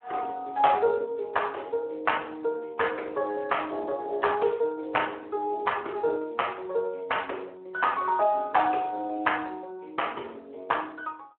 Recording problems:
phone line; 320 Hz to 3.2 kHz, Speex

